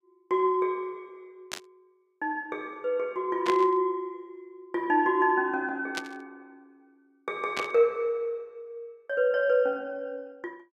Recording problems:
static burst; 4 times, first at 1.5 s; peak -1 dB vs average level

